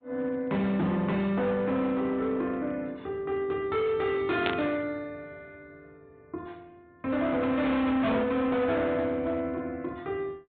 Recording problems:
treble missing; nothing above 3.7 kHz
codec artefacts; Opus, log-spectral distance 2 dB
distorted audio; hard clipping, signal-to-distortion ratio 8 dB
static burst; at 4.5 s; peak +1 dB vs average level

